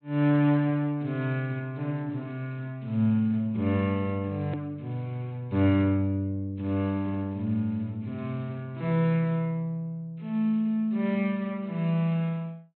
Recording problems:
treble missing; nothing above 4 kHz
click at an edit; at 4.5 s

